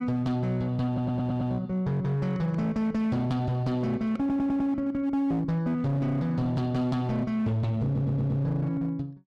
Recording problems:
distorted audio; hard clipping, signal-to-distortion ratio 10 dB
stutter; at 1 s, at 4 s and at 8 s

